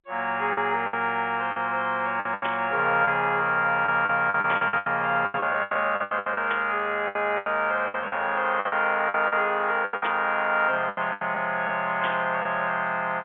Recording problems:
phone line; 190 Hz to 3.7 kHz, G.711
packet loss; 13% of the sound replaced, filled with the last packet
burst of static; 5 times, first at 2.5 s; peak -3 dB vs average level

